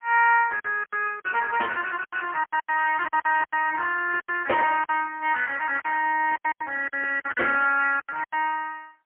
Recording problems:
phone line; 300 Hz to 3.1 kHz, AMR-NB, then MP3
packet loss; 13% of the sound replaced, filled with silence

